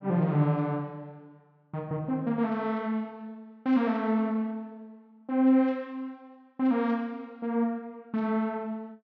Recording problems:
none

